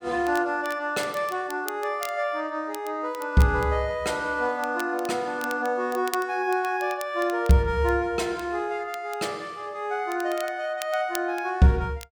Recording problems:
crackle; vinyl, SNR 17 dB

